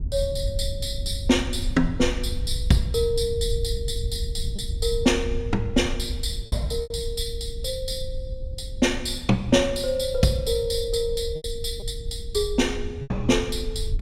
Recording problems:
low-frequency rumble; below 76 Hz, SNR 7 dB
lost packets; 2% of the sound replaced, filled with repeated pitch periods

